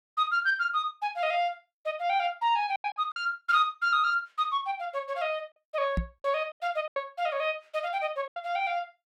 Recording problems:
lost packets; 5% of the sound replaced, filled with silence
microphone bump; at 6 s; peak +3 dB vs average level

